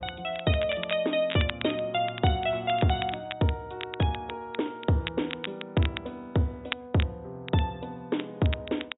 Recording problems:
treble missing; nothing above 4 kHz
crackle; vinyl, SNR 11 dB

